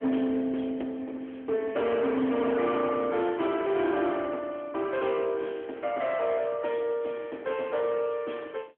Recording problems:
phone line; 220 Hz to 3.3 kHz, AMR-NB
distortion; hard clipping, signal-to-distortion ratio 11 dB
crackling; from 1 to 4 s and from 4 to 6 s; loose cable, SNR 28 dB

